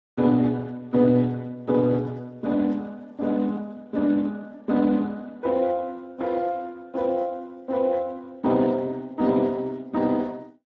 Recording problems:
codec artefacts; Speex, log-spectral distance 2 dB

